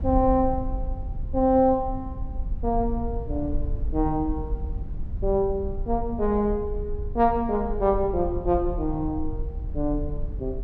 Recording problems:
low-frequency rumble; below 62 Hz, SNR 8 dB

